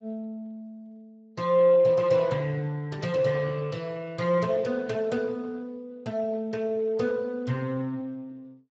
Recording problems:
lossy codec; Speex, log-spectral distance 2 dB

